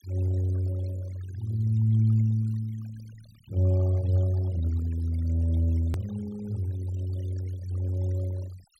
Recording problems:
denoising artefacts; signal-to-artefact ratio 23 dB
hard cut with a click; at 6 s

